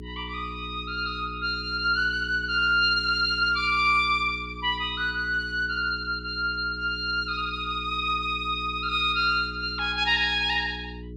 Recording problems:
hum; 60 Hz, harmonics up to 420 Hz, SNR 15 dB

